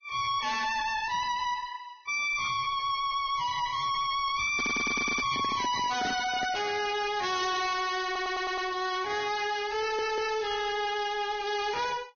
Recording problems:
lossy compression; Vorbis, log-spectral distance 5 dB, nothing above 6.3 kHz
distortion; hard clipping, uneven, signal-to-distortion ratio 4 dB
microphone handling noise; from 4.5 to 6.5 s; peak +1 dB vs average level
stutter; at 4.5 s, at 8 s and at 10 s

